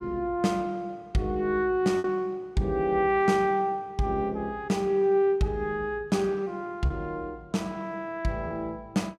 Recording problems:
lost packets; 1.5% of the sound replaced, filled with repeated pitch periods

